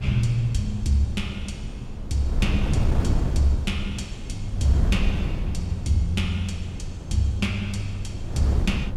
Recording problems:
wind noise; below 140 Hz, SNR 3 dB

